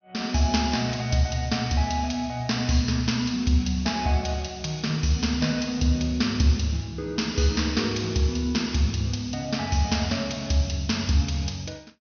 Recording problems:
low-pass filter; nothing above 6.4 kHz

